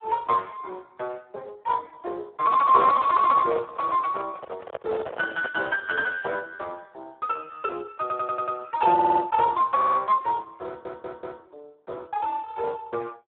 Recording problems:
phone line; 320 Hz to 3 kHz, Speex
microphone handling noise; from 3 to 5.5 s; peak -4 dB vs average level
stutter; 4 times, first at 8 s

